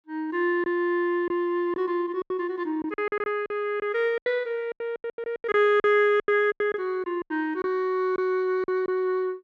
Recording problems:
lost packets; 13% of the sound replaced, filled with silence

